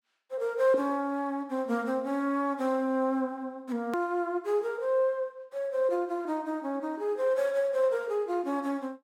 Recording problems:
edit click; at 4 s

